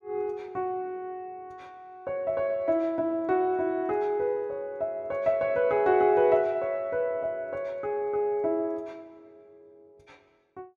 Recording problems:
none

